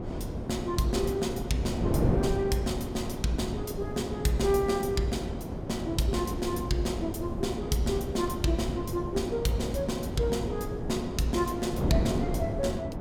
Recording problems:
wind on the microphone; below 370 Hz, SNR 4 dB

